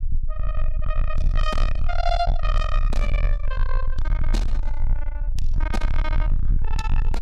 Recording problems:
distortion; soft clipping, signal-to-distortion ratio 7 dB
low-frequency rumble; below 42 Hz, strongest tone 20 Hz, SNR -4 dB

